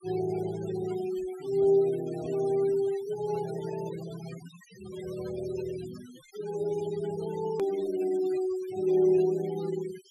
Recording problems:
denoising artefacts; signal-to-artefact ratio 18 dB
click at an edit; at 7.5 s

